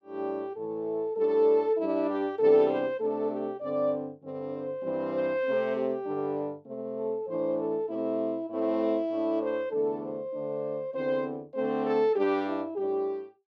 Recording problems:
none

